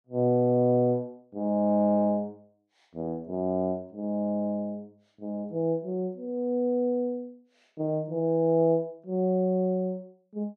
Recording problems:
none

